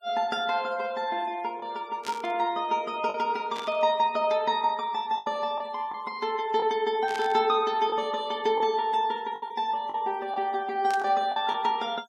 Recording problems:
noise reduction artefacts; signal-to-artefact ratio 24 dB
lost packets; 4% of the sound replaced, filled with the last packet
static burst; 4 times, first at 2 s; peak -6 dB vs average level

